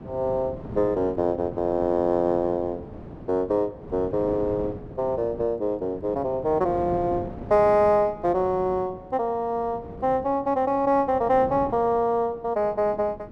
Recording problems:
wind noise; below 420 Hz, SNR 15 dB

